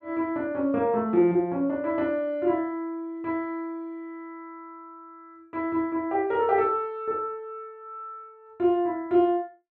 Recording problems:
none

